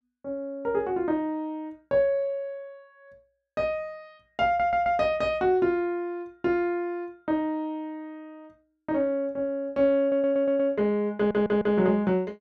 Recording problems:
audio stuttering; at 4.5 s, at 10 s and at 11 s

